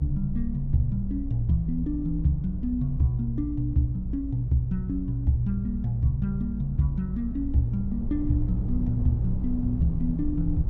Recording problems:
low-frequency rumble; below 66 Hz, SNR 6 dB

